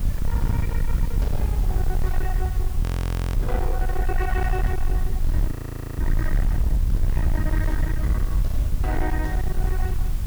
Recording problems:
distortion; hard clipping, signal-to-distortion ratio 7 dB
hum; 50 Hz, harmonics up to 600 Hz, SNR 12 dB
hiss; SNR 11 dB
rumble; below 68 Hz, SNR -6 dB
frozen audio; at 3 s for 0.5 s and at 5.5 s

